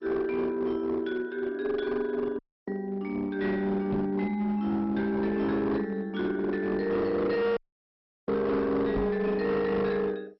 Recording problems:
lossy codec; MP2, log-spectral distance 2 dB, nothing above 5.5 kHz
distorted audio; hard clipping, uneven, signal-to-distortion ratio 10 dB
dropout; at 2.5 s and at 7.5 s for 0.5 s
microphone thump; at 4 s and at 9 s; peak -1 dB vs average level

